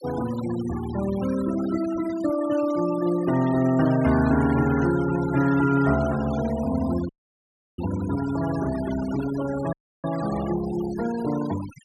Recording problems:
denoising artefacts; signal-to-artefact ratio 14 dB
audio cutting out; at 7 s for 0.5 s and at 9.5 s

